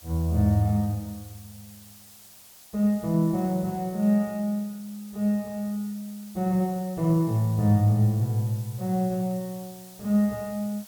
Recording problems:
hiss; SNR 21 dB

